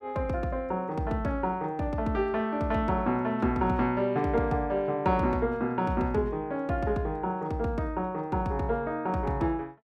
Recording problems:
none

